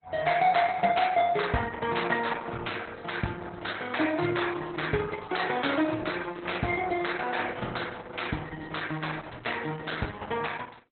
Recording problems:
codec artefacts; Opus, log-spectral distance 6 dB, nothing above 4.1 kHz

